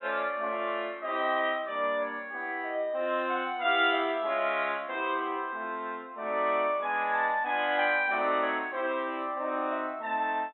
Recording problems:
low-pass filter; nothing above 3.8 kHz

